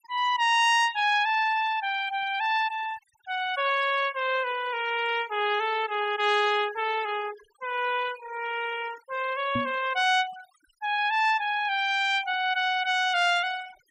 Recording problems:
noise reduction artefacts; signal-to-artefact ratio 17 dB
microphone thump; at 9.5 s; peak -3 dB vs average level

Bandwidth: 15.5 kHz